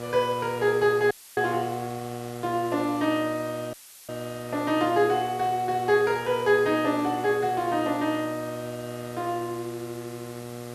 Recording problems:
electrical hum; 60 Hz, harmonics up to 2.6 kHz, SNR 12 dB
hiss; slope -2 dB per octave, SNR 20 dB
dropout; at 1 s and at 3.5 s; filled with static

